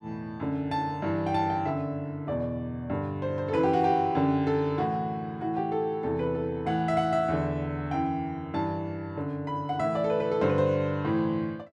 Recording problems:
none

